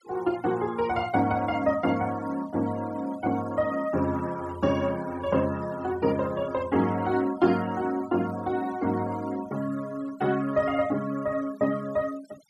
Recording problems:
noise reduction artefacts; signal-to-artefact ratio 20 dB

